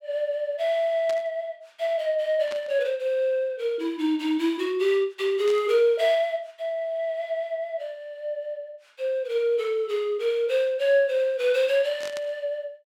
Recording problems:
burst of static; 4 times, first at 1 s; peak -9 dB vs average level

